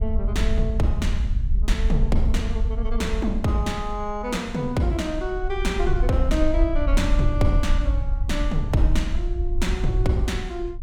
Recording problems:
rumble; below 56 Hz, SNR 0 dB

